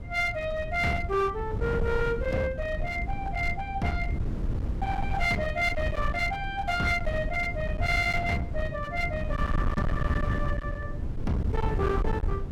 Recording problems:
distortion; hard clipping, uneven, signal-to-distortion ratio 8 dB
wind noise; below 140 Hz, SNR 3 dB

